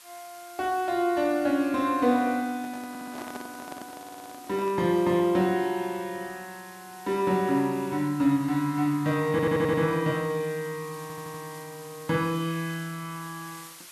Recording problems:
background hiss; slope +2 dB per octave, SNR 20 dB
microphone handling noise; from 2.5 to 5 s; peak -9 dB vs average level
audio stuttering; 4 times, first at 3 s

